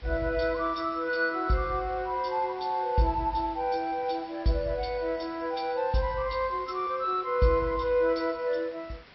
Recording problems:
low-pass filter; nothing above 5.3 kHz
codec artefacts; MP3, log-spectral distance 3 dB
background hiss; SNR 23 dB

